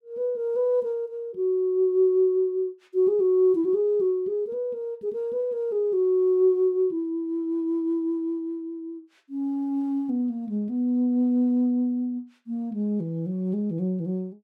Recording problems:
none

